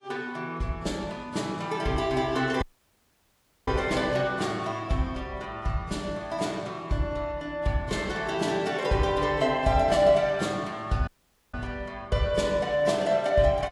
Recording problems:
codec artefacts; AAC, log-spectral distance 2 dB, nothing above 11 kHz
dropout; at 2.5 s for 1 s and at 11 s

